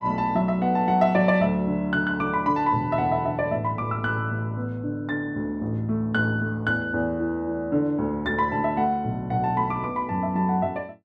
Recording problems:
none

